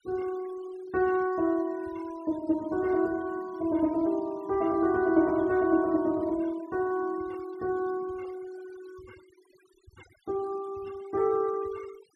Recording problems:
noise reduction artefacts; signal-to-artefact ratio 23 dB

